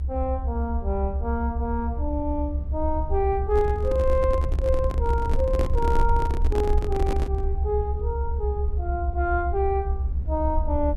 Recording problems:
rumble; below 72 Hz, SNR 0 dB
microphone handling noise; from 3.5 to 7.5 s; peak +1 dB vs average level

